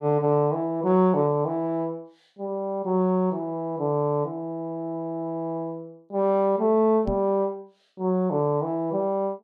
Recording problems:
microphone thump; at 7 s; peak -3 dB vs average level

